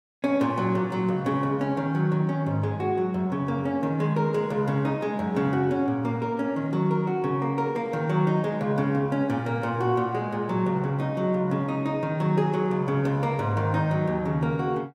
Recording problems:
none

